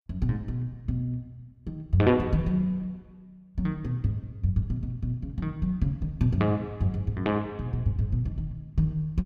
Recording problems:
none

